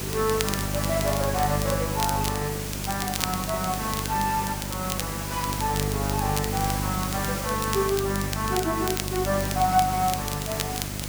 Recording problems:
electrical hum; 50 Hz, harmonics up to 650 Hz, SNR 4 dB
background hiss; slope -2 dB per octave, SNR 4 dB
crackling; vinyl, SNR 7 dB

